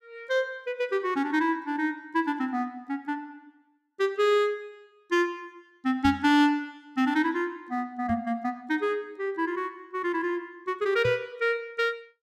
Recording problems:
microphone bump; at 6 s, at 8 s and at 11 s; peak -2 dB vs average level

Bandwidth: 14.5 kHz